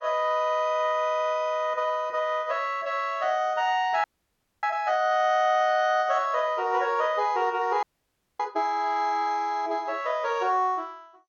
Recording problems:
lossy codec; MP2, log-spectral distance 2 dB, nothing above 6.7 kHz
audio freezing; at 4 s for 0.5 s and at 8 s for 0.5 s

